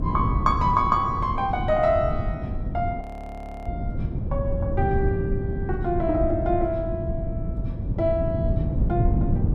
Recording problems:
wind on the microphone; below 160 Hz, SNR 2 dB
frozen audio; at 3 s for 0.5 s

